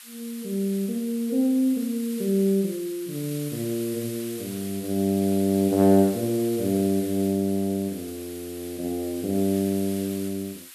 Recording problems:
background hiss; SNR 14 dB

